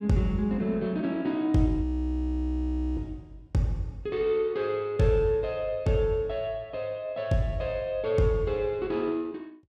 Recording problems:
frozen audio; at 2 s for 1 s

